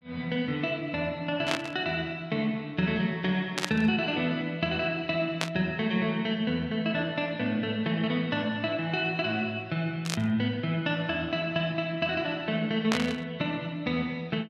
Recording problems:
burst of static; 5 times, first at 1.5 s; peak +5 dB vs average level

